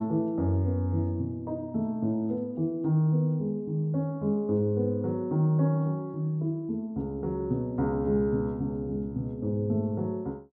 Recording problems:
none

